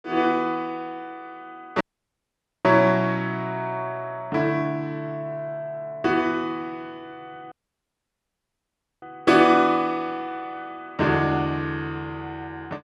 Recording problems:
audio cutting out; at 2 s for 1 s and at 7.5 s for 1.5 s

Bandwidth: 12.5 kHz